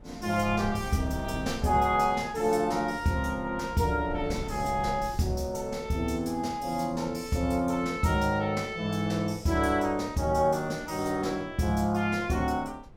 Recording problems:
wind noise; below 170 Hz, SNR 17 dB

